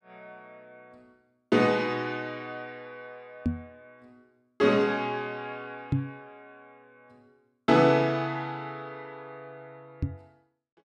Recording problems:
microphone bump; at 3.5 s, at 6 s and at 10 s; peak +4 dB vs average level

